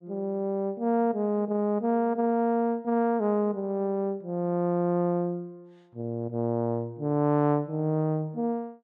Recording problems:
none

